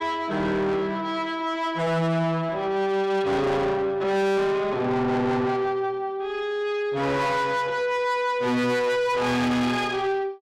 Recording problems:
distortion; soft clipping, signal-to-distortion ratio 7 dB

